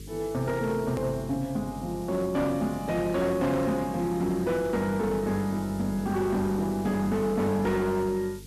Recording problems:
distortion; hard clipping, signal-to-distortion ratio 12 dB
hum; 50 Hz, harmonics up to 450 Hz, SNR 17 dB
background hiss; slope +6 dB per octave, SNR 21 dB
hard cut with a click; at 1 s

